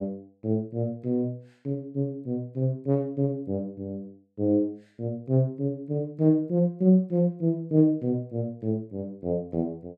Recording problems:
none

